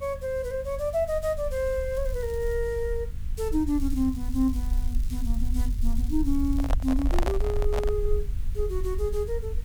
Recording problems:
mains hum; 50 Hz, harmonics up to 500 Hz, SNR 18 dB
background hiss; SNR 26 dB
rumble; below 58 Hz, SNR 3 dB
crackle; at 2 s and from 3.5 to 6.5 s; loose cable, SNR 22 dB
microphone handling noise; from 6.5 to 8 s; peak +3 dB vs average level

